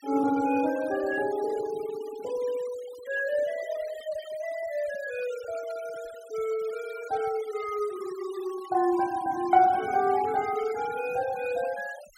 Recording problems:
noise reduction artefacts; signal-to-artefact ratio 18 dB

